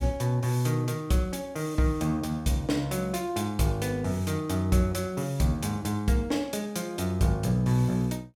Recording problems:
none

